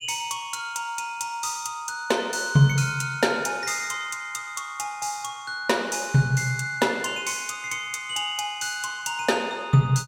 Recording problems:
none

